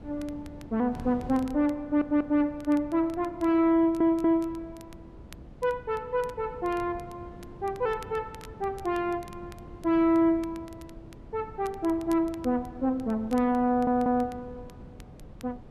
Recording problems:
wind noise; below 290 Hz, SNR 19 dB
crackling; vinyl, SNR 28 dB
stutter; at 2 s, at 4 s and at 14 s

